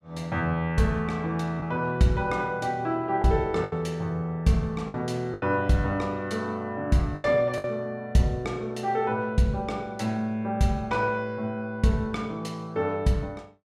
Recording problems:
lost packets; 3% of the sound replaced, filled with the last packet

